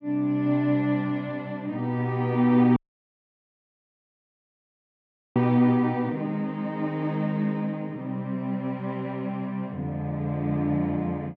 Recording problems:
audio cutting out; at 3 s for 2.5 s

